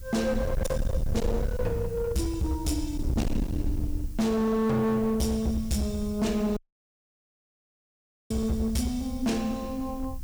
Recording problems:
distorted audio; hard clipping, signal-to-distortion ratio 7 dB
background hiss; slope +2 dB per octave, SNR 23 dB
wind on the microphone; below 100 Hz, SNR 6 dB
audio cutting out; at 6.5 s for 1.5 s

